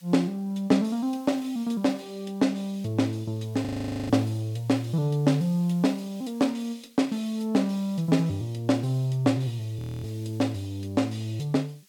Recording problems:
background hiss; slope +3 dB per octave, SNR 28 dB
frozen audio; at 3.5 s and at 10 s

